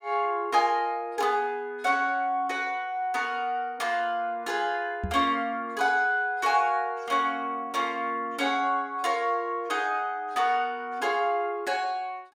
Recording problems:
knock on the microphone; at 5 s; peak -1 dB vs average level

